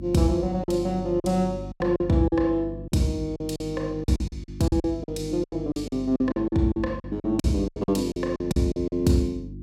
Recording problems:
hum; 50 Hz, harmonics up to 350 Hz, SNR 12 dB
packet loss; 15% of the sound replaced, filled with silence

